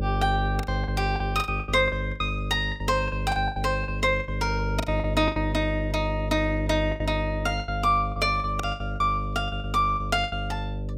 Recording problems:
mains hum; 50 Hz, harmonics up to 600 Hz, SNR 4 dB
packet loss; 15% of the sound replaced, filled with the last packet

